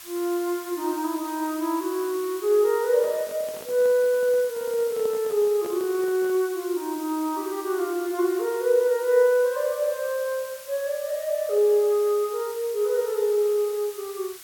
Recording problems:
background hiss; SNR 16 dB
microphone handling noise; from 3 to 6.5 s; peak -11 dB vs average level

